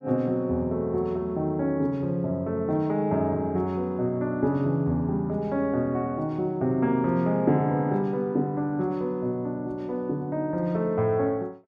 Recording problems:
none

